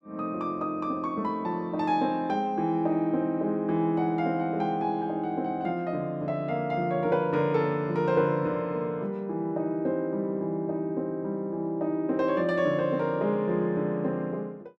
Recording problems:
none

